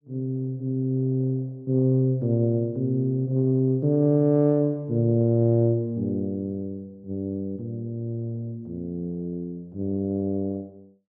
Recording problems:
none

